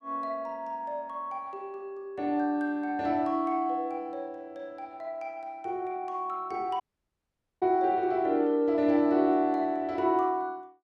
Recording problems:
audio cutting out; at 7 s for 1 s

